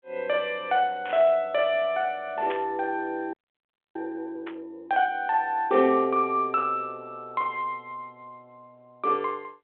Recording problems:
telephone audio; 280 Hz to 3.5 kHz, G.726
burst of static; at 1 s, at 2.5 s and at 4.5 s; peak -6 dB vs average level
frozen audio; at 3.5 s for 0.5 s

